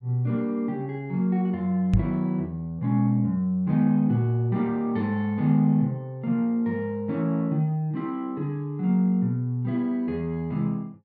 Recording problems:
microphone thump; at 2 s; peak +7 dB vs average level

